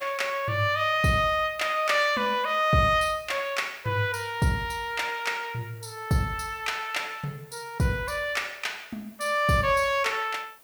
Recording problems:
hiss; SNR 26 dB

